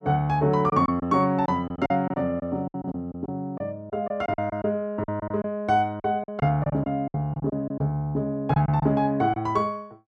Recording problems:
lost packets; 10% of the sound replaced, filled with silence

